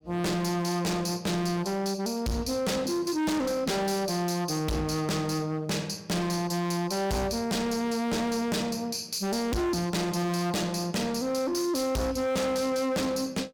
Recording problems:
distorted audio; hard clipping, signal-to-distortion ratio 6 dB

